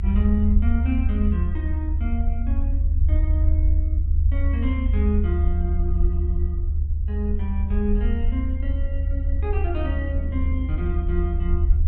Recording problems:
rumble; below 76 Hz, SNR -7 dB
wind noise; below 180 Hz, SNR 13 dB

